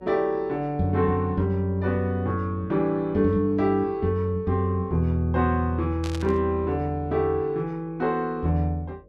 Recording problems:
hum; 50 Hz, harmonics up to 600 Hz, SNR 27 dB
static burst; at 6 s; peak -9 dB vs average level

